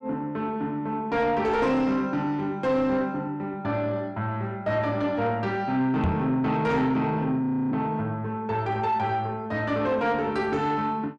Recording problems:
distorted audio; soft clipping, signal-to-distortion ratio 11 dB
microphone bump; at 6 s; peak +4 dB vs average level
frozen audio; at 7.5 s

